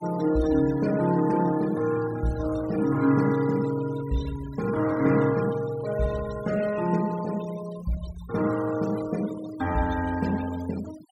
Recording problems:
noise reduction artefacts; signal-to-artefact ratio 17 dB

